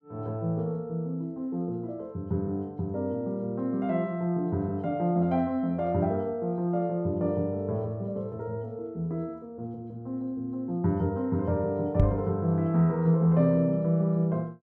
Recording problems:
knock on the microphone; at 12 s; peak +7 dB vs average level

